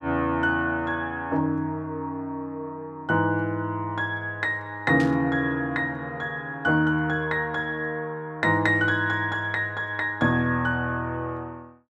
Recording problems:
burst of static; at 5 s; peak -8 dB vs average level

